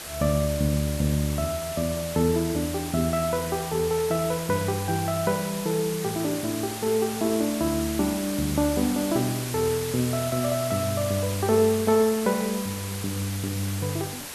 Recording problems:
hiss; slope -1 dB per octave, SNR 8 dB

